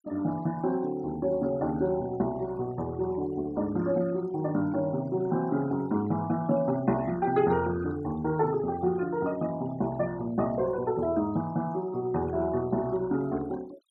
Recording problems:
noise reduction artefacts; signal-to-artefact ratio 21 dB

